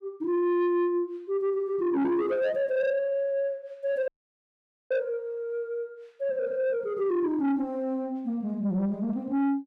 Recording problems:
distortion; soft clipping, signal-to-distortion ratio 10 dB
dropout; at 4 s for 1 s

